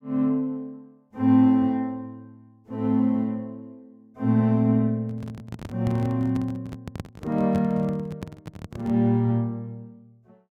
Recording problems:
handling noise; from 5 to 9 s; peak -4 dB vs average level

